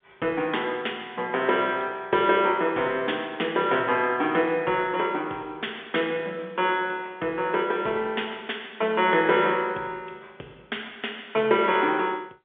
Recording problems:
telephone audio; 280 Hz to 3.5 kHz, G.711

